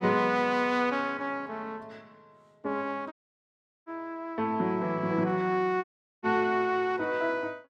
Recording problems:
dropout; at 3 s for 0.5 s and at 6 s

